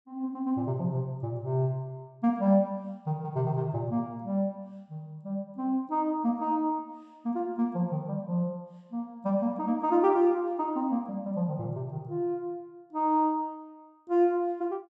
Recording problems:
none

